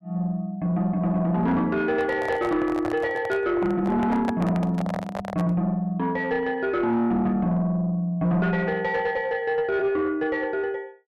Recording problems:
distorted audio; soft clipping, signal-to-distortion ratio 11 dB
microphone handling noise; from 2 to 5.5 s; peak 0 dB vs average level

